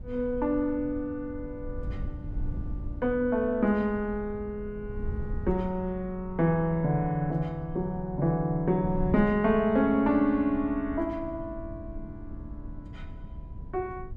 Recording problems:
wind on the microphone; below 96 Hz, SNR 13 dB

